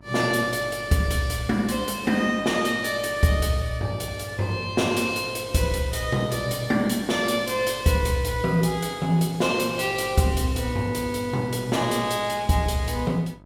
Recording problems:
electrical hum; 50 Hz, harmonics up to 1.4 kHz, SNR 23 dB

